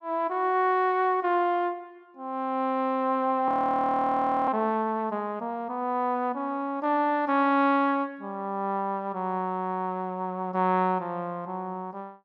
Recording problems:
frozen audio; at 3.5 s for 1 s

